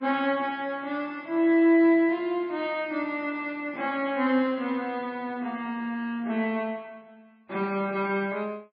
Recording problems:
codec artefacts; MP3, log-spectral distance 2 dB

